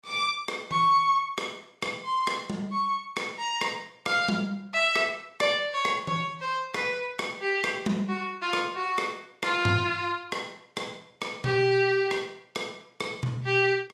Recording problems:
lossy codec; Vorbis, log-spectral distance 3 dB, nothing above 13.8 kHz

